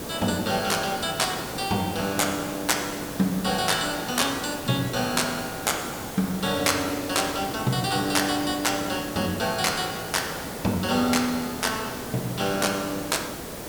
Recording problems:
background hiss; SNR 8 dB

